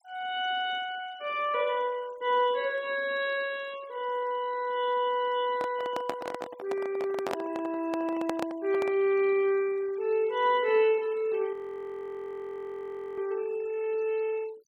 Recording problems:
denoising artefacts; signal-to-artefact ratio 23 dB
microphone handling noise; from 5.5 to 9 s; peak 0 dB vs average level
frozen audio; at 12 s for 1.5 s

